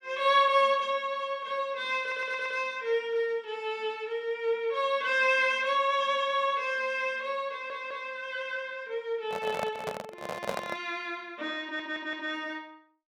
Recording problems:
stutter; at 2 s, at 7.5 s and at 12 s
microphone handling noise; from 9.5 to 11 s; peak +1 dB vs average level

